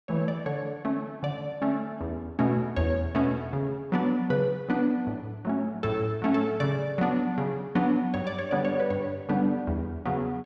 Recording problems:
none

